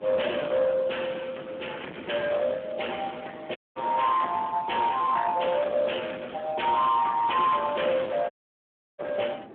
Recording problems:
phone line; 260 Hz to 3.6 kHz, Speex
distortion; soft clipping, signal-to-distortion ratio 13 dB
wind noise; below 910 Hz, SNR 21 dB
dropout; at 3.5 s and at 8.5 s for 0.5 s

